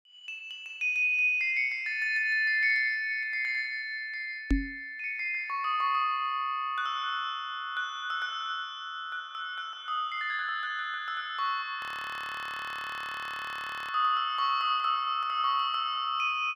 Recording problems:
microphone bump; at 4.5 s; peak +6 dB vs average level
frozen audio; at 12 s for 2 s

